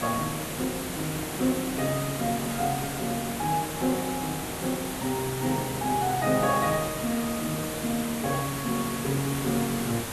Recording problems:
background hiss; slope -4 dB per octave, SNR 4 dB

